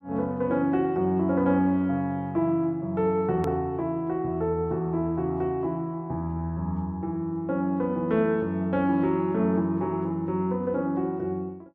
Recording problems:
edit click; at 3.5 s

